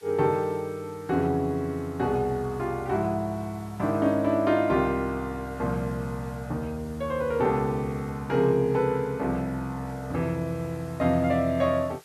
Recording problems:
background hiss; slope +1 dB per octave, SNR 27 dB

